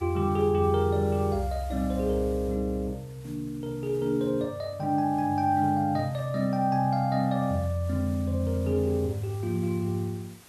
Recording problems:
hiss; slope -2 dB per octave, SNR 25 dB

